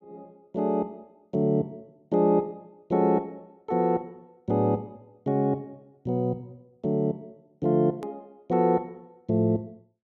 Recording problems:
click at an edit; at 8 s

